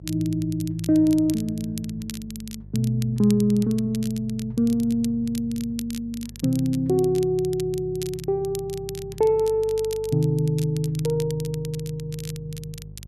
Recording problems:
hum; 50 Hz, harmonics up to 400 Hz, SNR 19 dB
crackle; vinyl, SNR 17 dB

